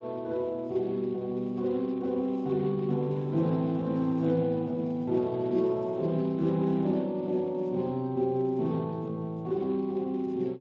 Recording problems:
codec artefacts; Speex, log-spectral distance 2 dB

